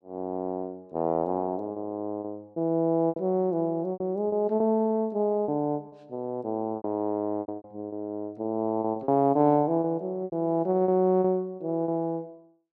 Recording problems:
packet loss; 9% of the sound replaced, filled with repeated pitch periods

